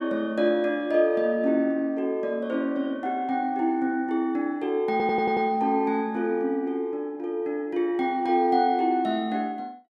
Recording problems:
audio stuttering; at 5 s

